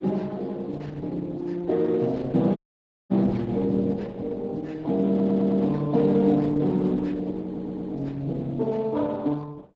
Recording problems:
lossy codec; Speex, then Opus, log-spectral distance 3 dB, nothing above 7.3 kHz
dropout; at 2.5 s for 0.5 s
stutter; at 5 s and at 7.5 s

